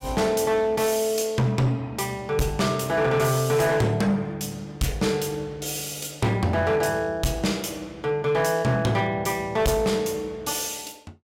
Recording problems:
distorted audio; hard clipping, signal-to-distortion ratio 10 dB

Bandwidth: 16 kHz